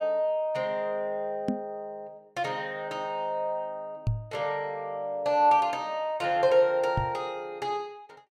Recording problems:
knock on the microphone; at 1.5 s, at 4 s and at 7 s; peak +4 dB vs average level

